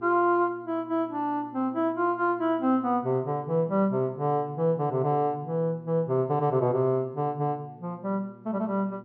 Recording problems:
electrical hum; 60 Hz, harmonics up to 840 Hz, SNR 24 dB

